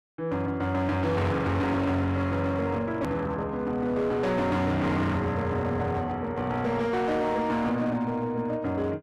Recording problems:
distortion; hard clipping, signal-to-distortion ratio 10 dB
hard cut with a click; at 3 s

